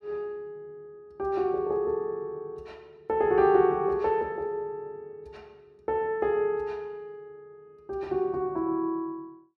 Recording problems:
none

